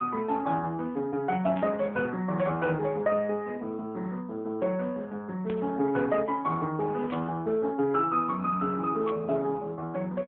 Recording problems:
phone line; 130 Hz to 3.4 kHz, AMR-NB
burst of static; 4 times, first at 1.5 s; peak -11 dB vs average level

